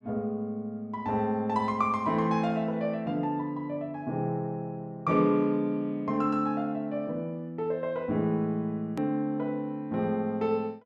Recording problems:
hard cut with a click; at 9 s

